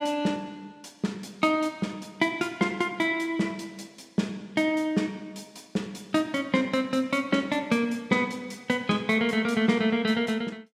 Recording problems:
none

